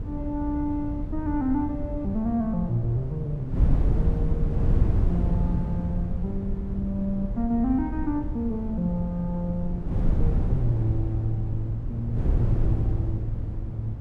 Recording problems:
wind on the microphone; below 120 Hz, SNR 0 dB

